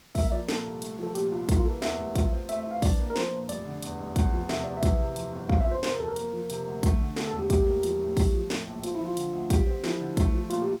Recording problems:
hiss; slope -1 dB per octave, SNR 25 dB

